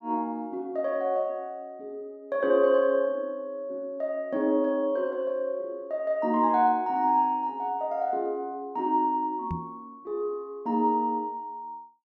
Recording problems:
knock on the microphone; at 9.5 s; peak -2 dB vs average level

